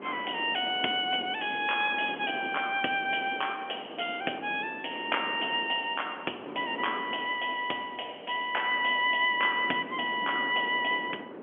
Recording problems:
telephone audio; 220 Hz to 3.3 kHz, G.711
wind on the microphone; below 720 Hz, SNR 14 dB

